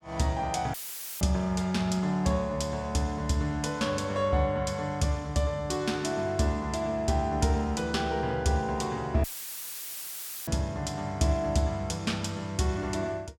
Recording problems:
dropout; at 0.5 s and at 9 s for 1 s; filled with static

